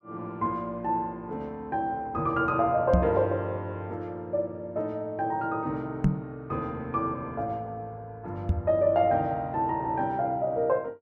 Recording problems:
microphone thump; at 3 s, at 6 s and at 8.5 s; peak +8 dB vs average level

